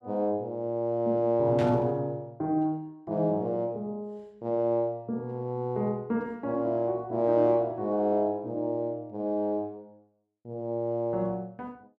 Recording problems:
static burst; at 1.5 s; peak -8 dB vs average level

